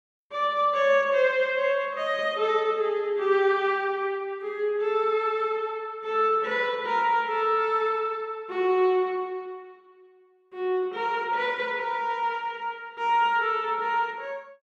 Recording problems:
none

